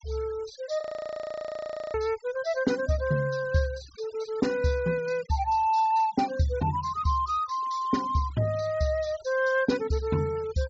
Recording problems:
treble cut off; nothing above 8 kHz
noise reduction artefacts; signal-to-artefact ratio 20 dB
audio freezing; at 1 s for 1 s

